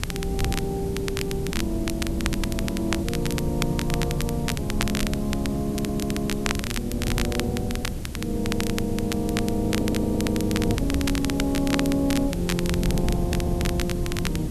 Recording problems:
background hiss; slope -1 dB per octave, SNR 16 dB
wind noise; below 190 Hz, SNR 3 dB
crackle; vinyl, SNR 5 dB
audio stuttering; 4 times, first at 5.5 s

